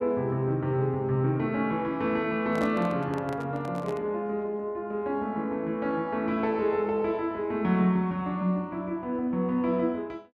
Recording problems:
handling noise; from 2.5 to 4 s; peak -5 dB vs average level

